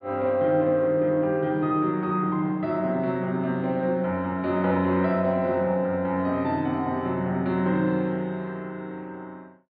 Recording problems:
low-pass filter; nothing above 4.7 kHz

